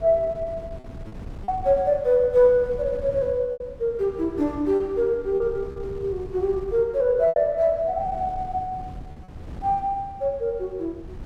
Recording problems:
wind noise; below 190 Hz, SNR 17 dB
lost packets; 3% of the sound replaced, filled with repeated pitch periods

